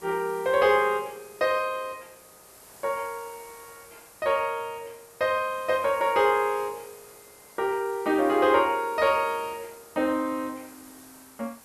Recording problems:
background hiss; SNR 22 dB

